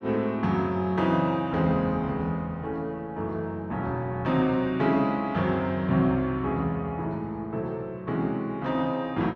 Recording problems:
none

